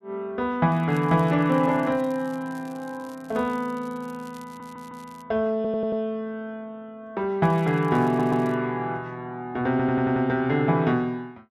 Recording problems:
crackle; from 0.5 to 5 s and from 7.5 to 8.5 s; loose cable, SNR 28 dB
stutter; 4 times, first at 4.5 s

